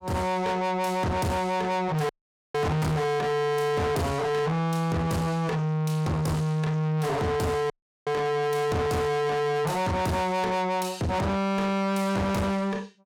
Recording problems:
distortion; soft clipping, signal-to-distortion ratio 6 dB
dropout; at 2 s and at 7.5 s

